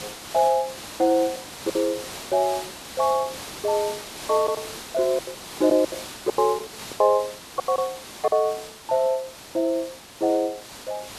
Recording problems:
background hiss; slope -2 dB per octave, SNR 12 dB
packet loss; 9% of the sound replaced, filled with silence

